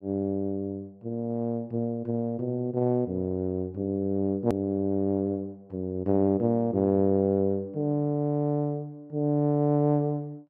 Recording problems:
hard cut with a click; at 4.5 s

